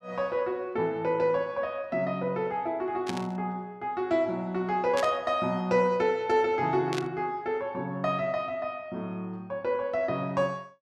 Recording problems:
burst of static; at 3 s, at 5 s and at 7 s; peak -2 dB vs average level

